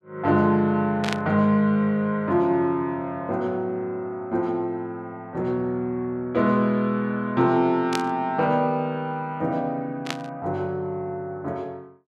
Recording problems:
static burst; at 1 s, at 8 s and at 10 s; peak 0 dB vs average level

